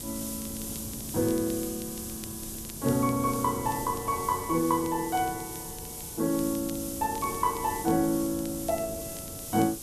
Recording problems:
background hiss; SNR 8 dB
wind noise; below 270 Hz, SNR 16 dB
crackle; vinyl, SNR 23 dB

